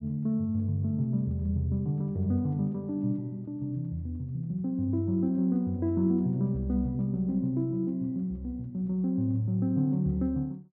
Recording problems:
none

